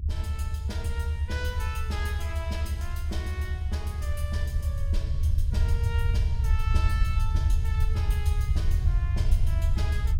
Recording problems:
low-frequency rumble; below 80 Hz, SNR -11 dB

